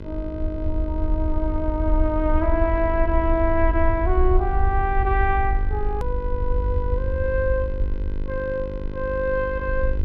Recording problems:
electrical hum; 50 Hz, harmonics up to 2.1 kHz, SNR 12 dB
rumble; below 66 Hz, SNR 1 dB
hard cut with a click; at 6 s

